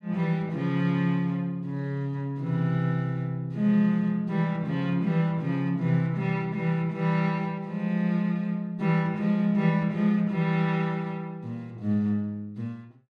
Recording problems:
none

